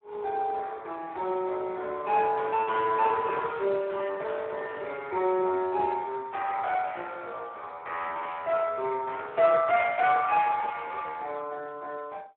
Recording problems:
phone line; 300 Hz to 3 kHz, Speex

